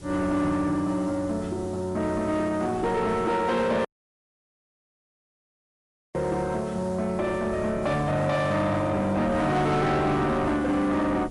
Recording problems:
codec artefacts; MP3, log-spectral distance 2 dB
distorted audio; soft clipping, signal-to-distortion ratio 10 dB
hiss; SNR 26 dB
wind noise; below 380 Hz, SNR 14 dB
dropout; at 4 s for 2.5 s

